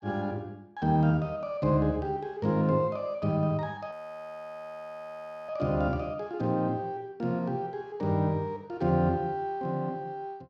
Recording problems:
audio freezing; at 4 s for 1.5 s

